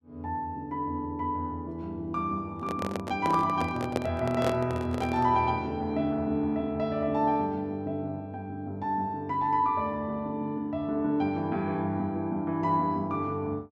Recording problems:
microphone handling noise; from 2.5 to 5.5 s; peak +3 dB vs average level

